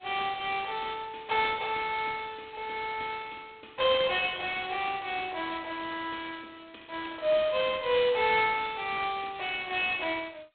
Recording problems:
telephone audio; 340 Hz to 3.6 kHz, G.726

